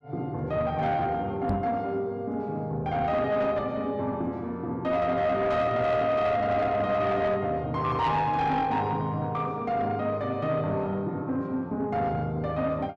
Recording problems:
distorted audio; soft clipping, signal-to-distortion ratio 11 dB
knock on the microphone; at 1.5 s; peak +2 dB vs average level

